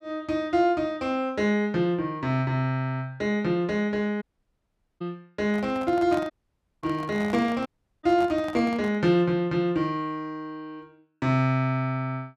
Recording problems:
audio cutting out; at 4 s for 1 s, at 6.5 s for 0.5 s and at 7.5 s
handling noise; from 5.5 to 9 s; peak -7 dB vs average level

